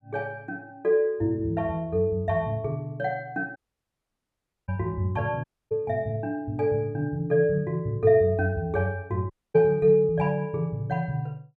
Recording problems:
audio cutting out; at 3.5 s for 1 s, at 5.5 s and at 9.5 s

